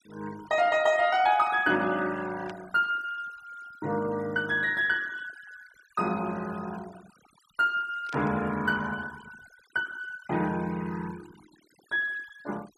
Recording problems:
denoising artefacts; signal-to-artefact ratio 21 dB
static burst; at 2.5 s and at 8 s; peak -13 dB vs average level

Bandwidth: 13 kHz